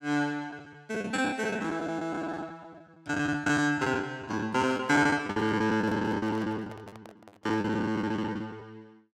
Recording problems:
packet loss; 17% of the sound replaced, filled with the last packet
handling noise; from 4.5 to 8 s; peak -11 dB vs average level

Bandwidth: 16.5 kHz